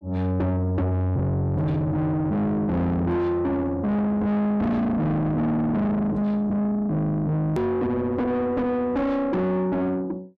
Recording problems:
distortion; soft clipping, signal-to-distortion ratio 7 dB
click at an edit; at 7.5 s

